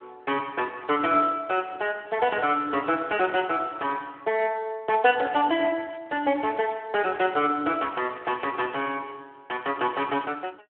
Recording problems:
phone line; 240 Hz to 3.3 kHz, Speex

